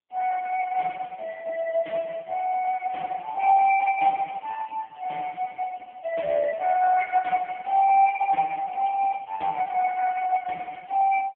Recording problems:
phone line; 320 Hz to 3.7 kHz, AMR-NB

